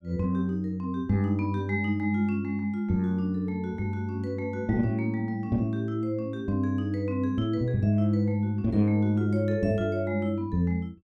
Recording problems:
none

